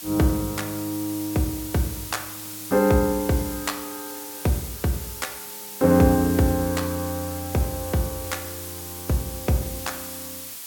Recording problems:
hiss; slope +2 dB per octave, SNR 9 dB

